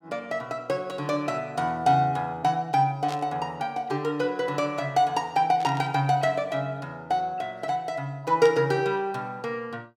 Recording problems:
static burst; at 3 s, at 5.5 s and at 8.5 s; peak -7 dB vs average level

